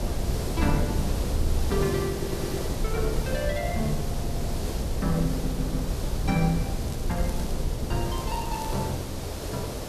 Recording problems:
hiss; SNR 4 dB
wind noise; below 120 Hz, SNR 0 dB
audio stuttering; 4 times, first at 1.5 s
crackle; at 7 s and at 8 s; loose cable, SNR 17 dB

